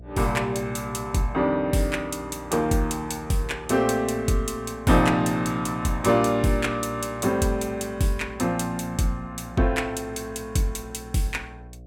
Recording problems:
hum; 60 Hz, harmonics up to 720 Hz, SNR 20 dB

